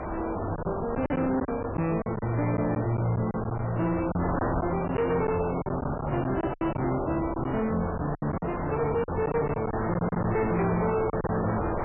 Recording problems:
codec artefacts; MP3, log-spectral distance 4 dB, nothing above 2.4 kHz
distorted audio; hard clipping, uneven, signal-to-distortion ratio 10 dB
wind on the microphone; below 1 kHz, SNR 5 dB
packet loss; 9% of the sound replaced, filled with silence

